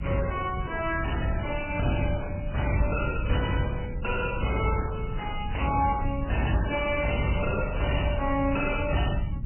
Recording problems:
lossy codec; MP3, then MP3, log-spectral distance 7 dB, nothing above 2.9 kHz
distorted audio; soft clipping, signal-to-distortion ratio 6 dB
rumble; below 120 Hz, SNR 6 dB

